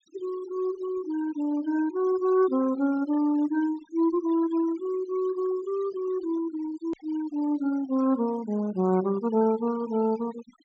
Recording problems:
low-pass filter; nothing above 8 kHz
noise reduction artefacts; signal-to-artefact ratio 20 dB
click at an edit; at 7 s

